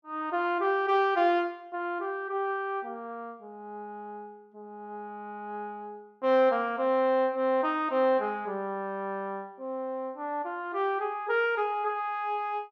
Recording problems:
none

